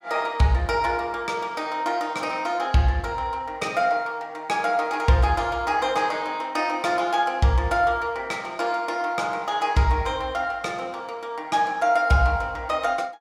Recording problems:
none

